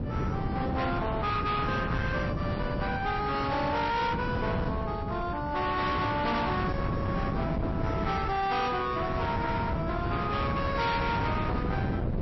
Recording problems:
codec artefacts; MP3, log-spectral distance 2 dB, nothing above 5.7 kHz
distorted audio; hard clipping, uneven, signal-to-distortion ratio 8 dB
wind noise; below 410 Hz, SNR 2 dB

